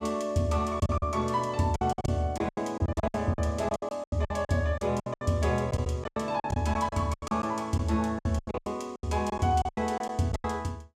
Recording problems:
lost packets; 18% of the sound replaced, filled with silence

